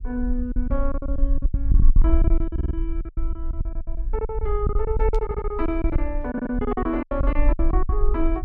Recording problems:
low-frequency rumble; below 50 Hz, SNR -2 dB
packet loss; 20% of the sound replaced, filled with silence
audio stuttering; at 2.5 s, at 5 s and at 6.5 s
burst of static; at 5 s; peak -12 dB vs average level

